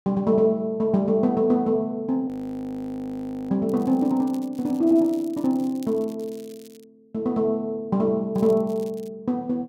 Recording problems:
audio freezing; at 2.5 s for 1 s
crackle; from 3.5 to 7 s and at 8.5 s; loose cable, SNR 27 dB

